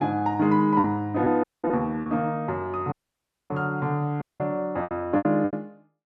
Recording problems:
lost packets; 8% of the sound replaced, filled with repeated pitch periods
dropout; at 1.5 s, at 3 s for 0.5 s and at 4 s

